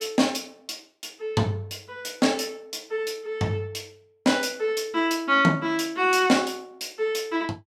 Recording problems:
none

